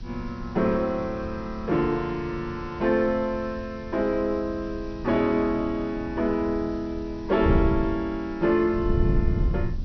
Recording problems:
treble cut off; nothing above 5.9 kHz
hiss; slope 0 dB per octave, SNR 28 dB
wind noise; below 130 Hz, SNR 8 dB

